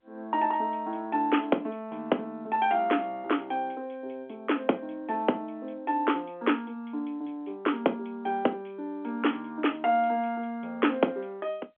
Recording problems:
telephone audio; 190 Hz to 3.4 kHz, G.711

